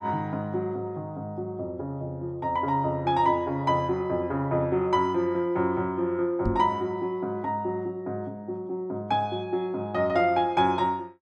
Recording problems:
knock on the microphone; at 6.5 s; peak +2 dB vs average level

